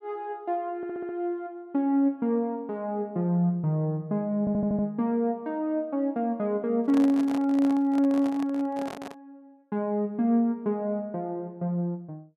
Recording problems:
audio stuttering; at 1 s and at 4.5 s
microphone handling noise; from 7 to 9 s; peak -6 dB vs average level

